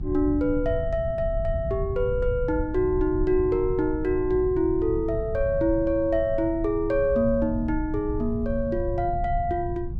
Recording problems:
electrical hum; 60 Hz, harmonics up to 1.1 kHz, SNR 22 dB
low-frequency rumble; below 98 Hz, SNR 8 dB

